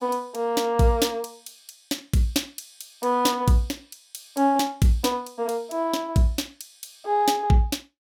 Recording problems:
none

